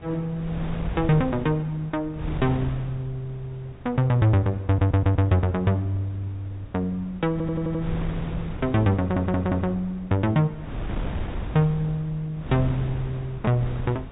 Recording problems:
low-pass filter; nothing above 4 kHz
wind on the microphone; below 230 Hz, SNR 11 dB
stutter; at 4.5 s, at 7.5 s and at 9 s

